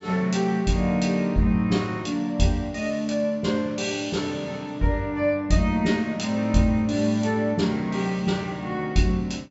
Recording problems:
low-pass filter; nothing above 8 kHz

